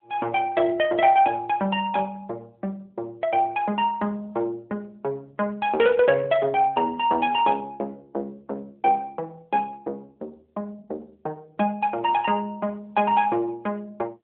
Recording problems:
telephone audio; 220 Hz to 3.4 kHz, AMR-NB

